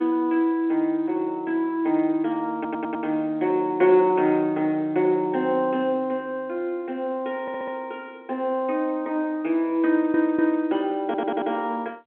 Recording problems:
phone line; 220 Hz to 3.5 kHz, G.711
stutter; 4 times, first at 2.5 s

